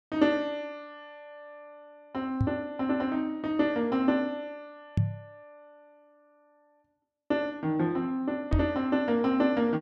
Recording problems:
microphone bump; at 2.5 s, at 5 s and at 8.5 s; peak +6 dB vs average level

